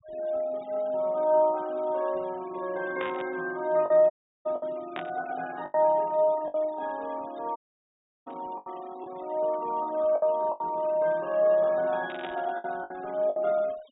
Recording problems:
treble missing; nothing above 4 kHz
noise reduction artefacts; signal-to-artefact ratio 24 dB
lost packets; 5% of the sound replaced, filled with the last packet
static burst; 4 times, first at 3 s; peak -5 dB vs average level
dropout; at 4 s and at 7.5 s for 0.5 s

